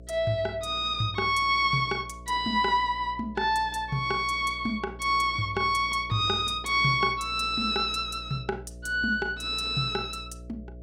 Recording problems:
hum; 60 Hz, harmonics up to 660 Hz, SNR 19 dB

